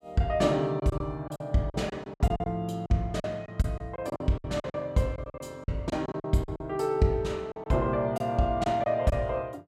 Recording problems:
packet loss; 12% of the sound replaced, filled with silence

